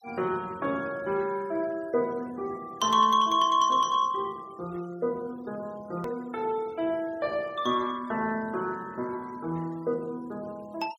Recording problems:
denoising artefacts; signal-to-artefact ratio 24 dB
click at an edit; at 6 s

